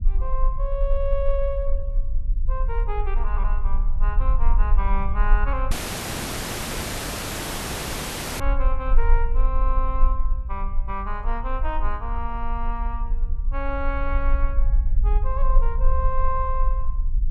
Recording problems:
low-frequency rumble; below 42 Hz, strongest tone 20 Hz, SNR -5 dB
dropout; at 5.5 s for 2.5 s

